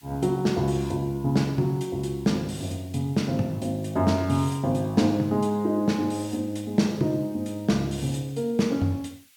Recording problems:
background hiss; SNR 28 dB

